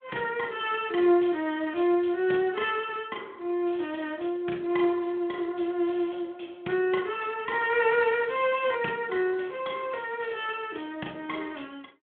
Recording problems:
phone line; 220 Hz to 3.4 kHz, Speex

